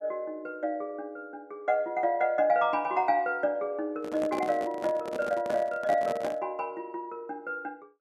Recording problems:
microphone handling noise; from 4 to 6.5 s; peak -3 dB vs average level

